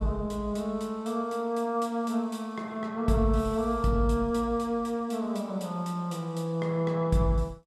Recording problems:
none

